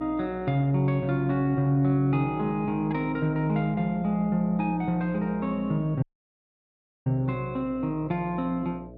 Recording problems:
hum; 60 Hz, harmonics up to 660 Hz, SNR 18 dB
dropout; at 6 s for 1 s

